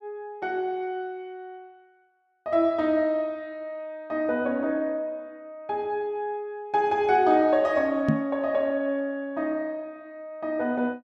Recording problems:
knock on the microphone; at 8 s; peak +7 dB vs average level

